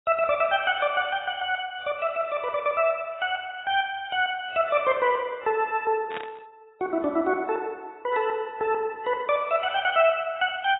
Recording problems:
codec artefacts; AAC, log-spectral distance 2 dB, nothing above 3 kHz
static burst; at 6 s; peak -6 dB vs average level

